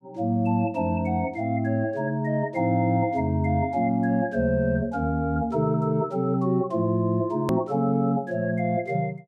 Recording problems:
click at an edit; at 7.5 s

